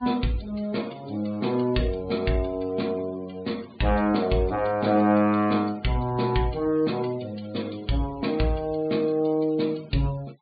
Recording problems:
low-pass filter; nothing above 4.6 kHz
noise reduction artefacts; signal-to-artefact ratio 23 dB

